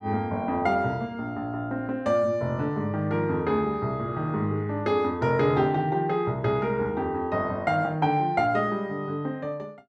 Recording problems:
none

